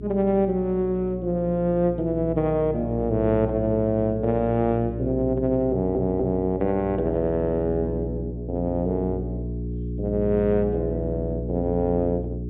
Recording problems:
low-pass filter; nothing above 4 kHz
hum; 60 Hz, harmonics up to 420 Hz, SNR 8 dB
audio stuttering; at 5.5 s

